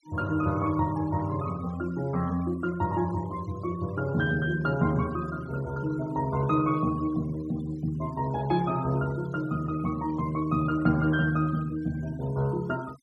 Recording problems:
noise reduction artefacts; signal-to-artefact ratio 21 dB

